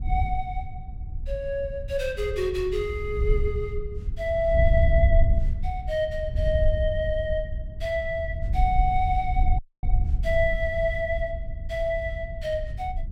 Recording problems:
wind on the microphone; below 74 Hz, SNR 1 dB
audio cutting out; at 9.5 s

